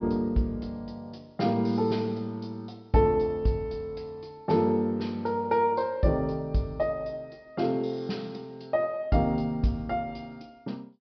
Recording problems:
treble missing; nothing above 5.5 kHz

